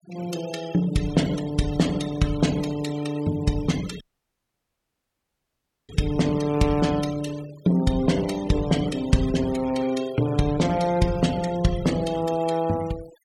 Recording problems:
denoising artefacts; signal-to-artefact ratio 16 dB
dropout; at 4 s for 2 s

